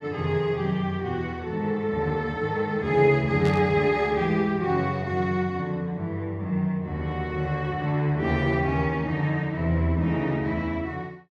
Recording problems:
static burst; at 3.5 s; peak -8 dB vs average level

